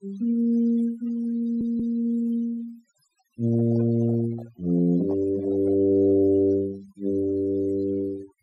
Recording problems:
denoising artefacts; signal-to-artefact ratio 25 dB
stutter; at 1.5 s
microphone handling noise; from 3.5 to 6 s; peak -12 dB vs average level

